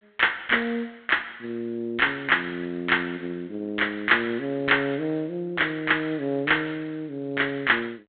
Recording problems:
phone line; 190 Hz to 3.5 kHz, G.726

